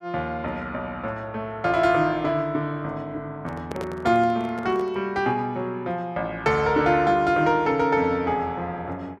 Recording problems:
handling noise; from 3.5 to 5 s; peak -5 dB vs average level

